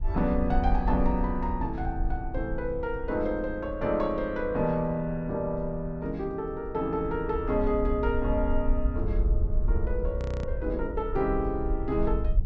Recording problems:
treble cut off; nothing above 8 kHz
wind on the microphone; below 60 Hz, SNR 4 dB
frozen audio; at 10 s

